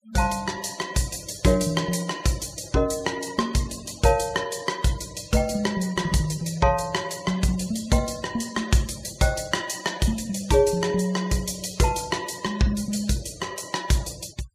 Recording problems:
denoising artefacts; signal-to-artefact ratio 19 dB

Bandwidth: 15.5 kHz